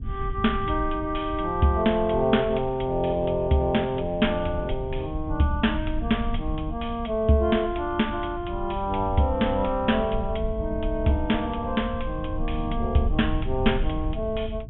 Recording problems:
low-pass filter; nothing above 3.4 kHz
rumble; below 82 Hz, SNR 9 dB

